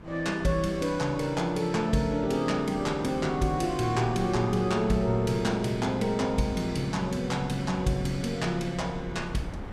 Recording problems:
wind noise; below 430 Hz, SNR 15 dB

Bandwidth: 15 kHz